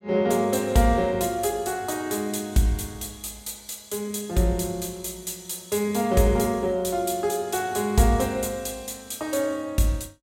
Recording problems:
none

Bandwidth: 16 kHz